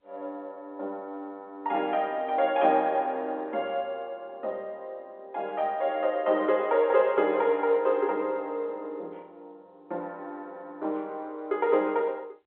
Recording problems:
phone line; 260 Hz to 4 kHz, G.711

